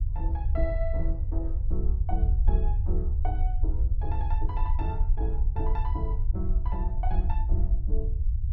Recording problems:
rumble; below 66 Hz, SNR -9 dB

